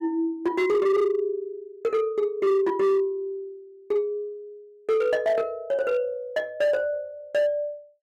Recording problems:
distorted audio; hard clipping, signal-to-distortion ratio 12 dB

